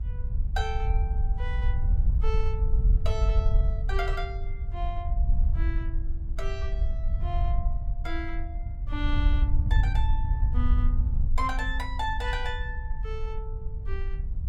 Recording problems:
wind on the microphone; below 64 Hz, SNR -8 dB

